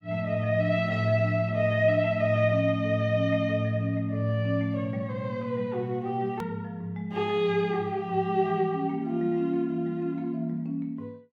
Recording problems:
click at an edit; at 6.5 s

